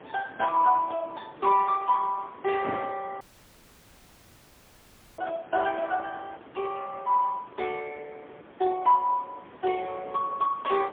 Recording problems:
telephone audio; 260 Hz to 3.3 kHz, AMR-NB, then MP3
wind on the microphone; below 1.1 kHz, SNR 19 dB
audio cutting out; at 3 s for 2 s

